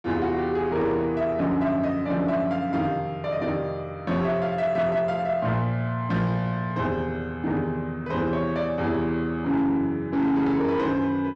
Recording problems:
distorted audio; soft clipping, signal-to-distortion ratio 11 dB

